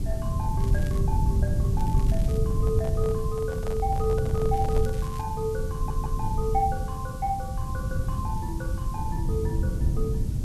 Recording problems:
background hiss; slope +3 dB per octave, SNR 17 dB
low-frequency rumble; below 120 Hz, SNR -4 dB
crackle; at 0.5 s, at 2 s and at 4.5 s; loose cable, SNR 18 dB
microphone handling noise; from 2.5 to 5 s; peak -2 dB vs average level
stutter; at 6 s

